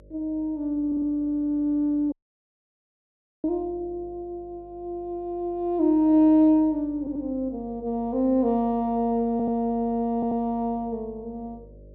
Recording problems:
mains hum; 50 Hz, harmonics up to 600 Hz, SNR 25 dB
audio stuttering; 4 times, first at 1 s
dropout; at 2 s for 1.5 s

